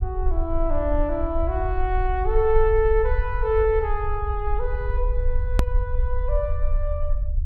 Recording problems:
rumble; below 56 Hz, SNR 2 dB
edit click; at 5.5 s

